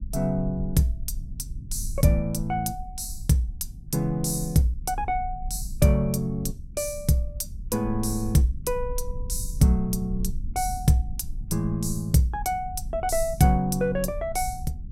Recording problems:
low-frequency rumble; below 60 Hz, SNR 11 dB

